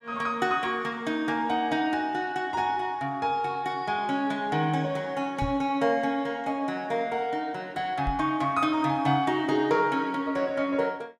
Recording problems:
knock on the microphone; at 5.5 s and at 8 s; peak -1 dB vs average level

